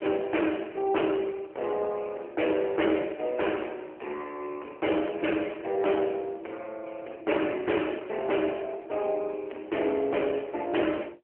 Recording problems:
phone line; 260 Hz to 3 kHz, AMR-NB
distorted audio; hard clipping, uneven, signal-to-distortion ratio 12 dB

